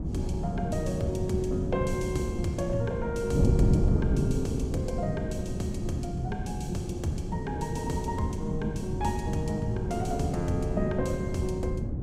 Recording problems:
wind on the microphone; below 210 Hz, SNR -1 dB

